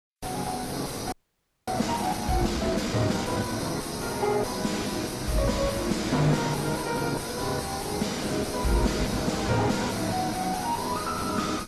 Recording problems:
codec artefacts; Opus, then Vorbis, log-spectral distance 5 dB, nothing above 12.7 kHz
distorted audio; soft clipping, signal-to-distortion ratio 1 dB
frozen audio; at 1 s for 0.5 s

